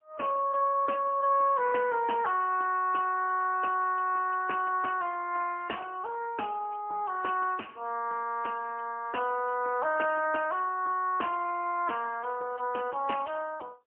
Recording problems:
phone line; 320 Hz to 3.1 kHz, AMR-NB, then MP3

